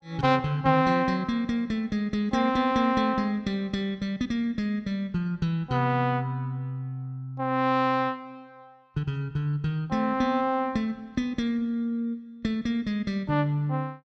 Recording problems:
none

